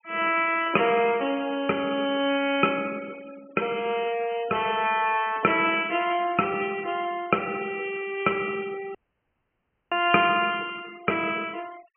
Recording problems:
treble missing; nothing above 3.1 kHz
noise reduction artefacts; signal-to-artefact ratio 22 dB
audio cutting out; at 9 s for 1 s

